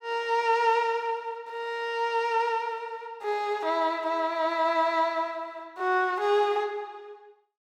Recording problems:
none

